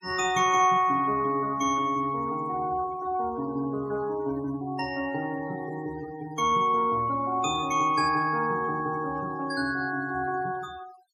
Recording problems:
denoising artefacts; signal-to-artefact ratio 22 dB

